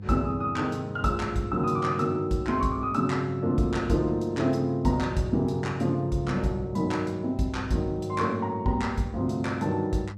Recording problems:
electrical hum; 50 Hz, harmonics up to 500 Hz, SNR 13 dB

